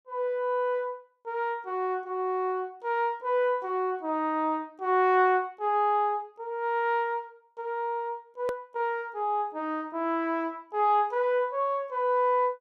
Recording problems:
hard cut with a click; at 8.5 s

